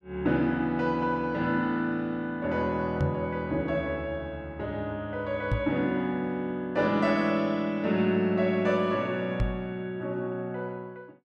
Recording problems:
microphone thump; at 3 s, at 5.5 s and at 9.5 s; peak +4 dB vs average level

